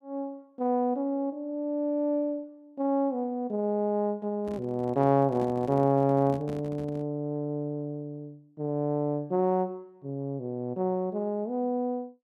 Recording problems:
microphone handling noise; from 4.5 to 7 s; peak -7 dB vs average level

